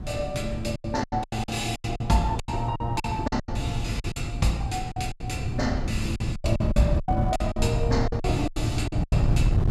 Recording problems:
wind on the microphone; below 140 Hz, SNR 1 dB
lost packets; 16% of the sound replaced, filled with silence

